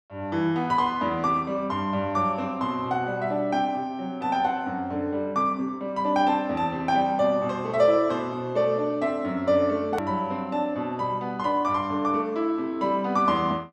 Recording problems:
click at an edit; at 10 s

